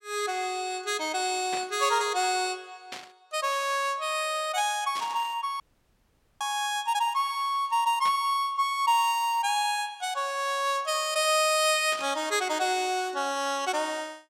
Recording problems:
burst of static; 5 times, first at 1.5 s; peak -6 dB vs average level
dropout; at 5.5 s for 1 s

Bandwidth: 16.5 kHz